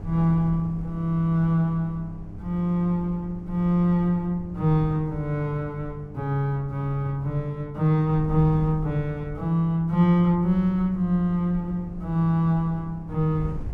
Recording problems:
electrical hum; 50 Hz, harmonics up to 1.1 kHz, SNR 21 dB
wind noise; below 110 Hz, SNR 16 dB

